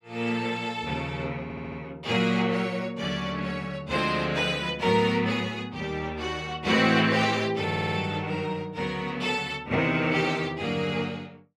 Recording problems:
stutter; at 1.5 s and at 7.5 s

